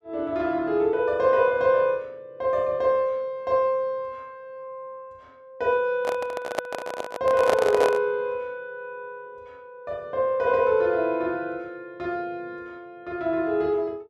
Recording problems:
microphone handling noise; from 6 to 8 s; peak +3 dB vs average level

